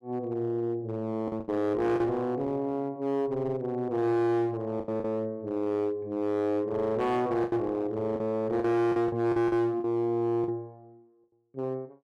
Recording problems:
distorted audio; hard clipping, uneven, signal-to-distortion ratio 11 dB
packet loss; 6% of the sound replaced, filled with the last packet

